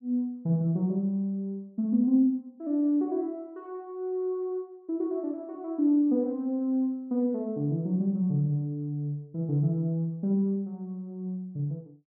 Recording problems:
none

